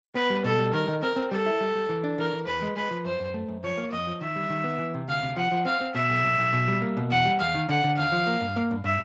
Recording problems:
lossy codec; Speex, then MP2, log-spectral distance 3 dB, nothing above 7.1 kHz

